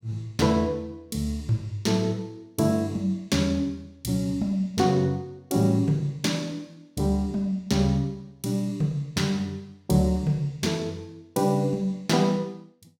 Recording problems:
none

